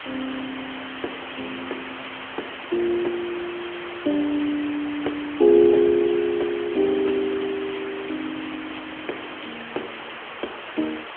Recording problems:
telephone audio; 260 Hz to 3.3 kHz, AMR-NB
background hiss; SNR 10 dB

